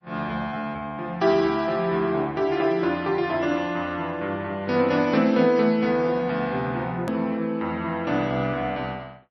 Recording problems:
lossy compression; MP3, then MP3, log-spectral distance 2 dB, nothing above 13.3 kHz
edit click; at 7 s

